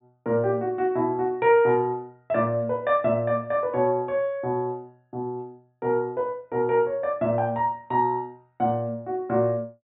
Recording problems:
treble cut off; nothing above 4 kHz

